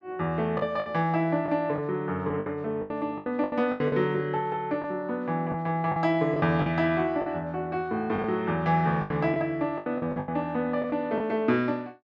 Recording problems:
packet loss; 10% of the sound replaced, filled with the last packet

